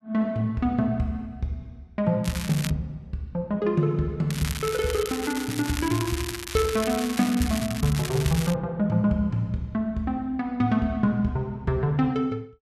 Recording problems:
crackle; at 2 s and from 4.5 to 8.5 s; loose cable, SNR 9 dB

